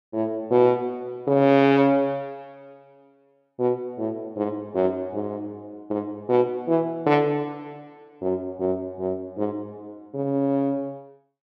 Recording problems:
none

